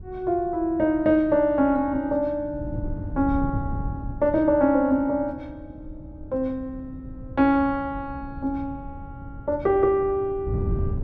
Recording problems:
wind on the microphone; below 140 Hz, SNR 12 dB

